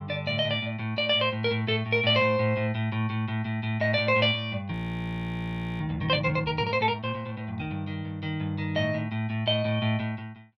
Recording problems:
frozen audio; at 4.5 s for 1 s

